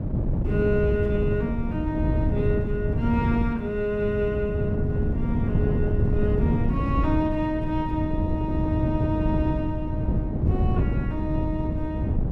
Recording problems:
wind on the microphone; below 190 Hz, SNR -2 dB

